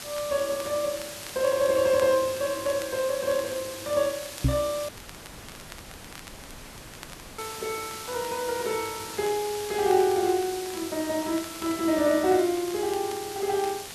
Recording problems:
hiss; slope -1 dB per octave, SNR 10 dB
crackle; vinyl, SNR 22 dB
microphone thump; at 4.5 s; peak +7 dB vs average level
audio cutting out; at 5 s for 2.5 s

